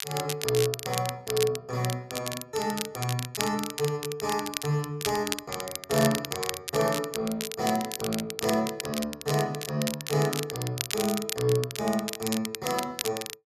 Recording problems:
crackling; vinyl, SNR 5 dB

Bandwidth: 14 kHz